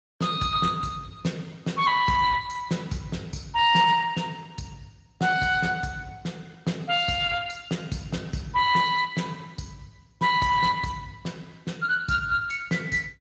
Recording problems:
codec artefacts; Speex, log-spectral distance 4 dB, nothing above 7.3 kHz

